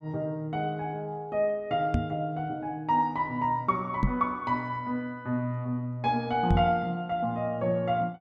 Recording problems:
knock on the microphone; at 2 s, at 4 s and at 6.5 s; peak +7 dB vs average level

